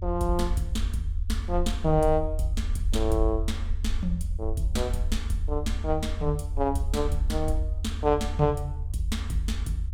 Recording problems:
rumble; below 80 Hz, SNR 3 dB

